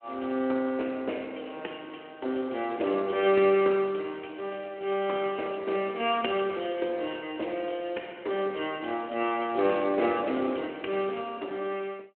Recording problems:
telephone audio; 240 Hz to 3.2 kHz, Speex

